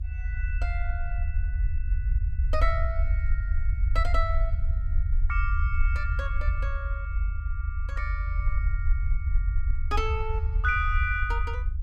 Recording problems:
rumble; below 72 Hz, SNR -4 dB

